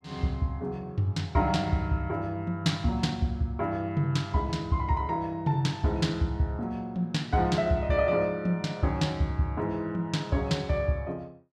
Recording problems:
none

